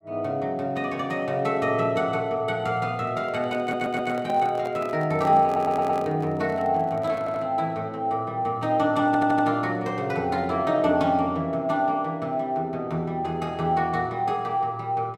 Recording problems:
handling noise; from 3 to 7.5 s; peak -8 dB vs average level
stutter; 4 times, first at 3.5 s

